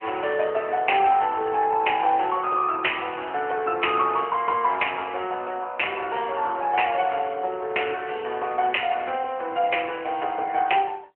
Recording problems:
phone line; 340 Hz to 3.1 kHz, AMR-NB

